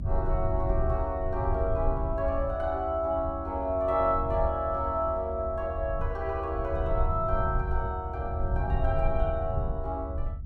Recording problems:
low-frequency rumble; below 80 Hz, SNR 3 dB

